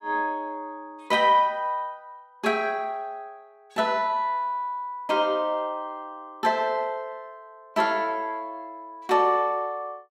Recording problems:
none

